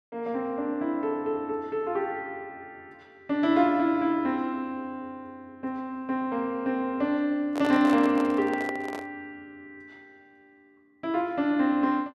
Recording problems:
handling noise; from 7.5 to 9 s; peak -3 dB vs average level

